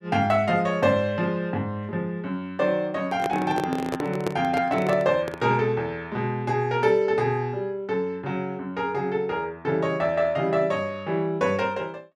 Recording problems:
microphone handling noise; from 3 to 5.5 s; peak +1 dB vs average level

